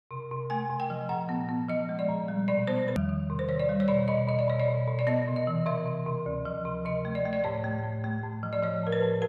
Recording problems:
edit click; at 3 s

